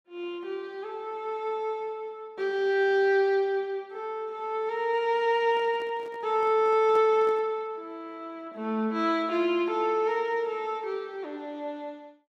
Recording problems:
microphone handling noise; from 5.5 to 7.5 s; peak -9 dB vs average level

